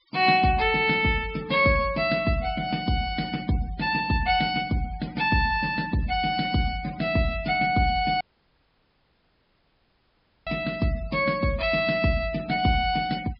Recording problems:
treble missing; nothing above 5.5 kHz
noise reduction artefacts; signal-to-artefact ratio 21 dB
audio cutting out; at 8 s for 2.5 s

